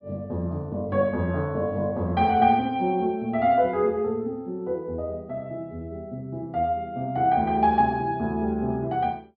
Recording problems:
low-pass filter; nothing above 5.5 kHz

